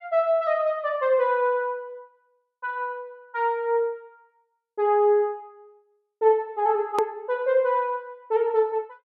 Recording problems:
hard cut with a click; at 7 s

